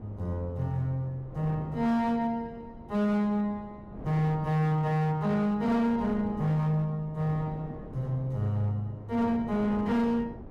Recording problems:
distorted audio; hard clipping, signal-to-distortion ratio 12 dB
wind noise; below 380 Hz, SNR 16 dB

